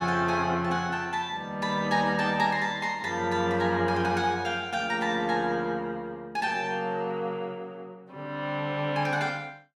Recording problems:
none

